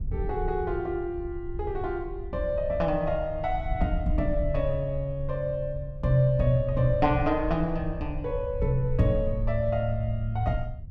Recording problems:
low-frequency rumble; below 74 Hz, SNR 8 dB

